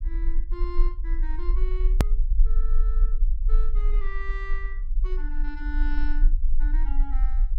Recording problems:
rumble; below 36 Hz, strongest tone 26 Hz, SNR -13 dB
click at an edit; at 2 s

